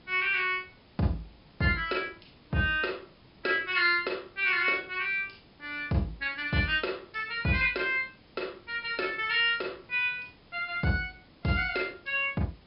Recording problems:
treble cut off; nothing above 5.5 kHz
hiss; slope -4 dB per octave, SNR 28 dB

